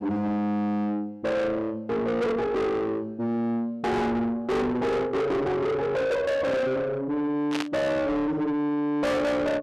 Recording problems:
distortion; soft clipping, signal-to-distortion ratio 6 dB
burst of static; at 7.5 s; peak -1 dB vs average level

